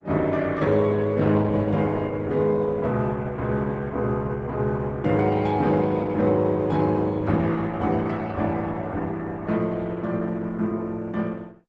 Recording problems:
lossy codec; Opus, log-spectral distance 2 dB, nothing above 7.6 kHz

